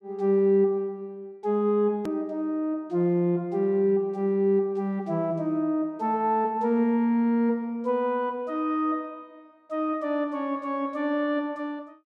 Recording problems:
hard cut with a click; at 2 s

